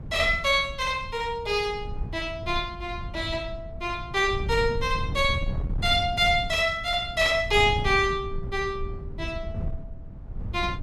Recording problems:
wind on the microphone; below 110 Hz, SNR 10 dB

